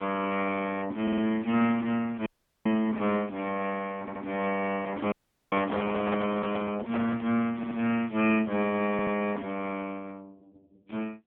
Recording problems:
phone line; 150 Hz to 3.3 kHz, AMR-NB
stutter; 4 times, first at 1 s
dropout; at 2.5 s and at 5 s
handling noise; from 4.5 to 7 s; peak -2 dB vs average level

